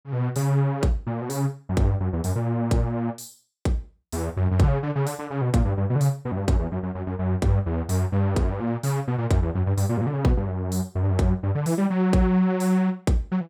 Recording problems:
none

